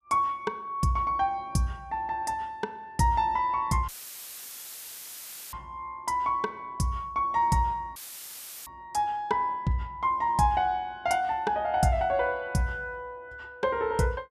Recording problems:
audio cutting out; at 4 s for 1.5 s and at 8 s for 0.5 s; filled with static

